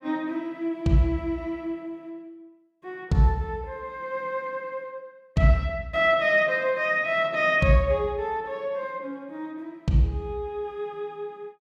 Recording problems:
none

